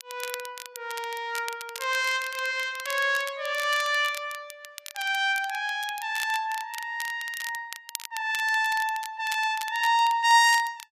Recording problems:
crackling; vinyl, SNR 14 dB

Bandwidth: 14.5 kHz